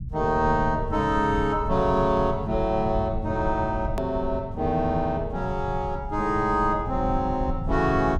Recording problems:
rumble; below 120 Hz, SNR 9 dB
edit click; at 4 s

